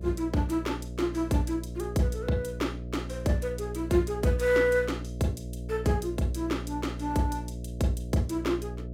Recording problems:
electrical hum; 60 Hz, harmonics up to 660 Hz, SNR 9 dB

